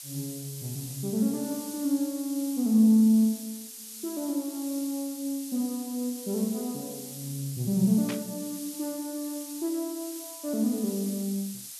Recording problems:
hiss; slope +5 dB per octave, SNR 11 dB
burst of static; at 8 s; peak -5 dB vs average level

